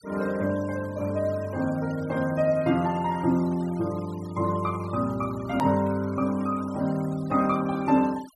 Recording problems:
denoising artefacts; signal-to-artefact ratio 22 dB
edit click; at 5.5 s

